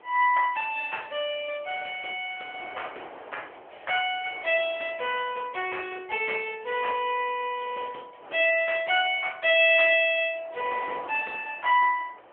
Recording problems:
phone line; 300 Hz to 3.4 kHz, AMR-NB
wind noise; below 1.2 kHz, SNR 21 dB

